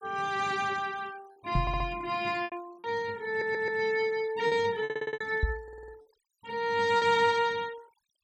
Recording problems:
noise reduction artefacts; signal-to-artefact ratio 23 dB
packet loss; 5% of the sound replaced, filled with repeated pitch periods
microphone bump; at 1.5 s and at 5.5 s; peak +4 dB vs average level
audio stuttering; 4 times, first at 1.5 s

